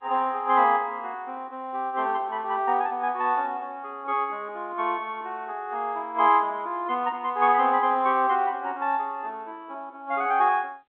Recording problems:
telephone audio; 220 Hz to 3.6 kHz, G.711

